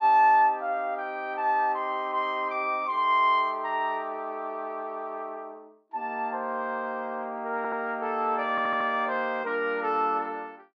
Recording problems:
stutter; at 7.5 s and at 8.5 s

